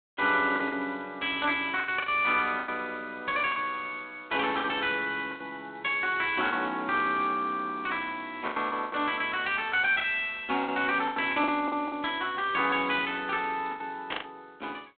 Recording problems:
telephone audio; 220 Hz to 3.5 kHz, G.726
packet loss; 8% of the sound replaced, filled with the last packet
static burst; at 14 s; peak -2 dB vs average level

